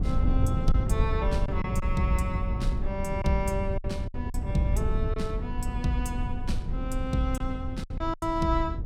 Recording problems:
rumble; below 98 Hz, SNR -1 dB
lost packets; 5% of the sound replaced, filled with silence

